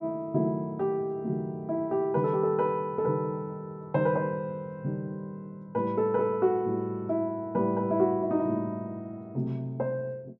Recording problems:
none

